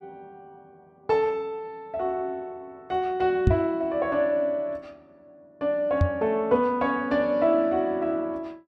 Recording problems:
microphone bump; at 3.5 s and at 6 s; peak +8 dB vs average level

